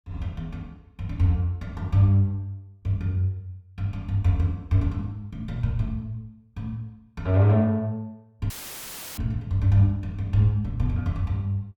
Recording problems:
dropout; at 8.5 s for 0.5 s; filled with static

